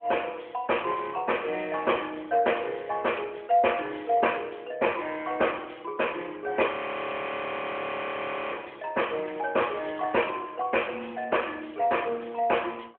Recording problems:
telephone audio; 300 Hz to 3.3 kHz, AMR-NB
audio freezing; at 6.5 s for 2 s

